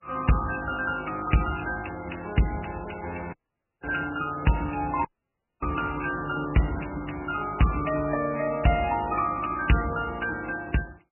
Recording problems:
codec artefacts; MP3, log-spectral distance 8 dB, nothing above 2.9 kHz
distortion; soft clipping, signal-to-distortion ratio 11 dB
dropout; at 3.5 s for 0.5 s and at 5 s for 0.5 s

